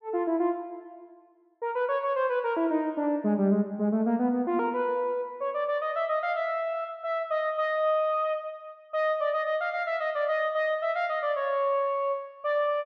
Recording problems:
none

